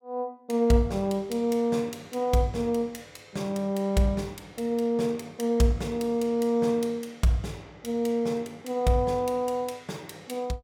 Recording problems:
none

